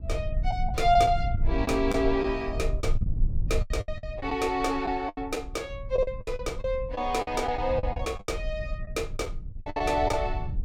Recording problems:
low-frequency rumble; below 68 Hz, SNR 6 dB
packet loss; 12% of the sound replaced, filled with the last packet

